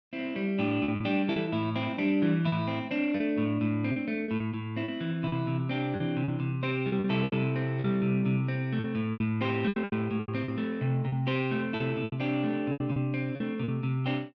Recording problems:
lost packets; 10% of the sound replaced, filled with repeated pitch periods

